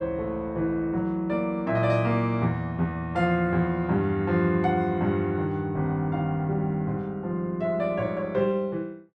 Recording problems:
none

